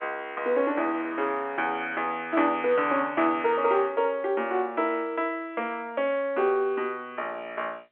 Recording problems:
phone line; 280 Hz to 3.3 kHz, G.711

